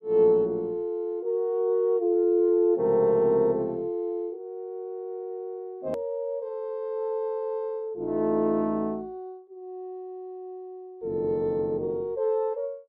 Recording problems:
edit click; at 6 s

